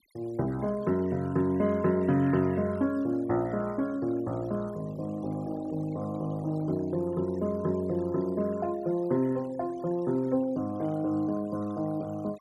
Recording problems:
denoising artefacts; signal-to-artefact ratio 23 dB

